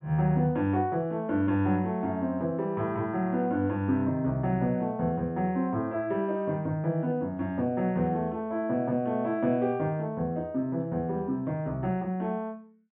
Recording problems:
treble cut off; nothing above 4 kHz

